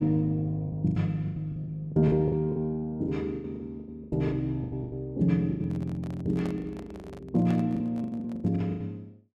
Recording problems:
packet loss; 17% of the sound replaced, filled with the last packet
handling noise; from 5.5 to 8.5 s; peak -9 dB vs average level

